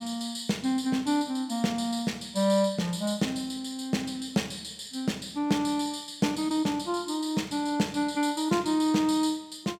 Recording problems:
none

